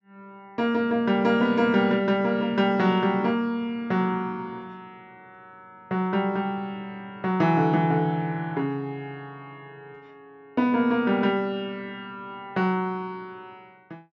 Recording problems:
low-pass filter; nothing above 8 kHz

